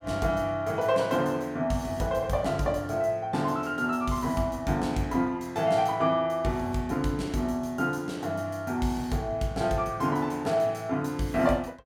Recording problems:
none

